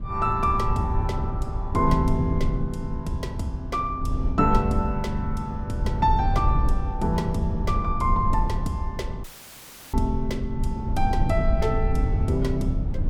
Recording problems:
low-frequency rumble; below 98 Hz, SNR 1 dB
dropout; at 9 s for 0.5 s; filled with static

